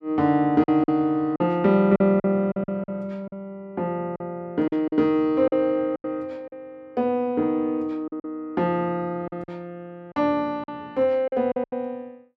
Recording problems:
packet loss; 9% of the sound replaced, filled with silence

